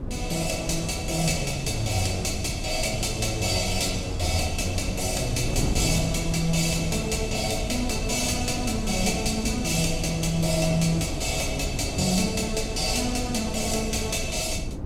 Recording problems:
wind noise; below 210 Hz, SNR 6 dB

